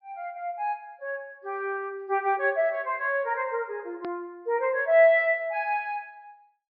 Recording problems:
treble missing; nothing above 5.5 kHz
edit click; at 4 s

